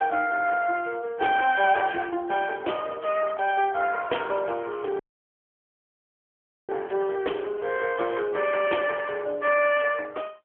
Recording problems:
phone line; 300 Hz to 3.3 kHz, AMR-NB
dropout; at 5 s for 1.5 s

